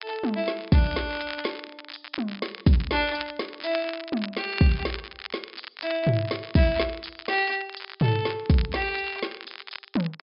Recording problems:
low-pass filter; nothing above 5.5 kHz
crackling; vinyl, SNR 13 dB

